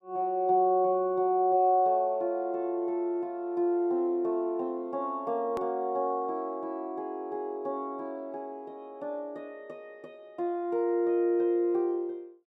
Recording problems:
hard cut with a click; at 5.5 s

